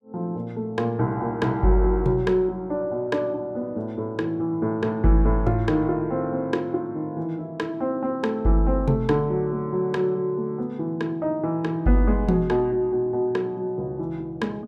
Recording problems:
none

